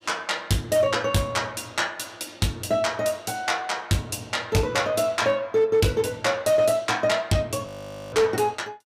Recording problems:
distorted audio; hard clipping, signal-to-distortion ratio 12 dB
audio freezing; at 7.5 s

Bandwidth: 15 kHz